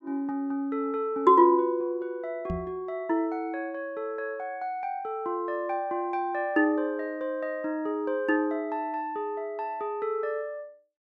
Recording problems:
microphone bump; at 2.5 s; peak -1 dB vs average level

